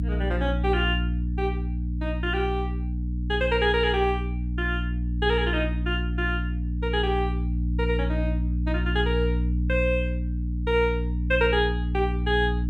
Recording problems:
electrical hum; 60 Hz, harmonics up to 300 Hz, SNR 1 dB

